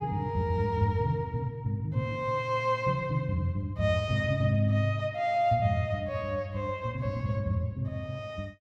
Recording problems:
none

